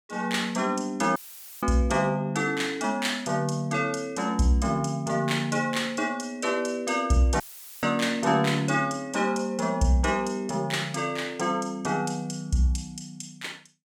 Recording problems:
dropout; at 1 s and at 7.5 s; filled with static

